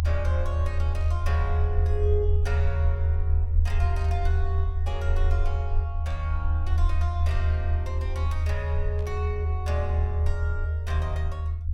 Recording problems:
rumble; below 80 Hz, strongest tone 80 Hz, SNR -9 dB
burst of static; 4 times, first at 1 s; peak -12 dB vs average level

